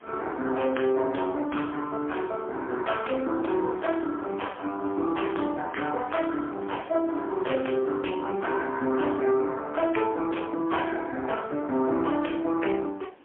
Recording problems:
telephone audio; 220 Hz to 3.4 kHz, AMR-NB, then MP3
wind on the microphone; below 1.1 kHz, SNR 25 dB

